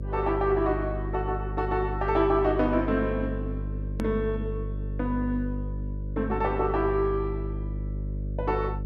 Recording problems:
electrical hum; 50 Hz, harmonics up to 550 Hz, SNR 5 dB
edit click; at 4 s

